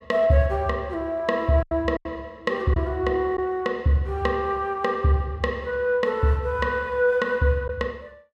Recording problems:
packet loss; 3% of the sound replaced, filled with silence

